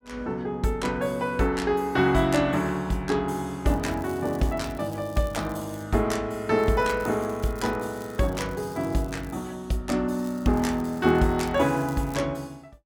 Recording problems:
crackling; from 3.5 to 6 s, from 6.5 to 9.5 s and from 10 to 12 s; loose cable, SNR 24 dB

